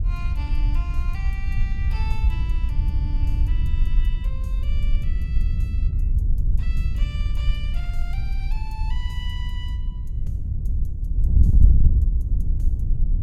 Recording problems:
wind noise; below 68 Hz, SNR -16 dB

